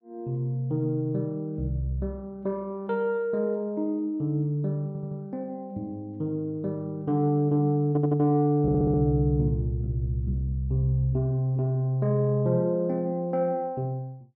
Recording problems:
audio stuttering; at 5 s, at 8 s and at 8.5 s

